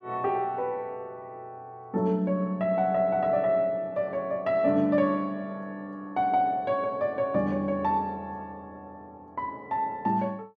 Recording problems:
none

